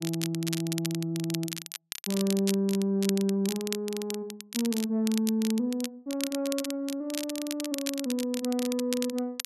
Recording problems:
crackle; vinyl, SNR 7 dB

